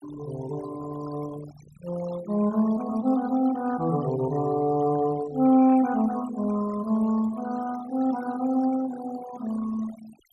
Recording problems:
noise reduction artefacts; signal-to-artefact ratio 17 dB

